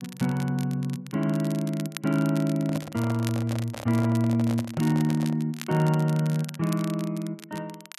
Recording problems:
crackle; vinyl, SNR 17 dB
handling noise; from 2.5 to 5.5 s; peak -5 dB vs average level

